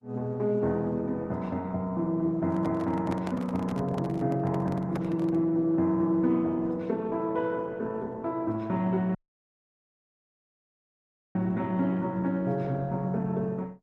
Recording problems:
lossy compression; Opus, then Opus, log-spectral distance 2 dB
microphone handling noise; from 2.5 to 5.5 s; peak -5 dB vs average level
audio cutting out; at 9 s for 2 s

